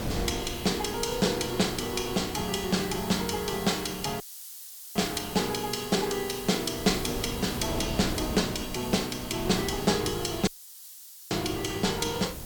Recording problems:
hiss; SNR 12 dB
wind noise; below 510 Hz, SNR 11 dB
audio cutting out; at 4 s for 1 s and at 10 s for 1 s

